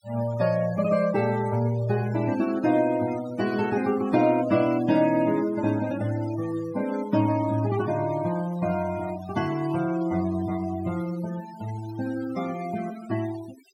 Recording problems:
noise reduction artefacts; signal-to-artefact ratio 18 dB

